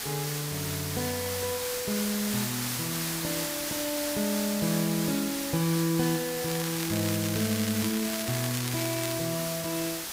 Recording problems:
background hiss; slope 0 dB per octave, SNR 1 dB
crackling; from 6.5 to 9 s; loose cable, SNR 6 dB

